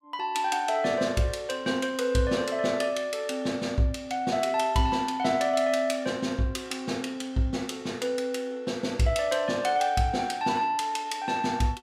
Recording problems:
none

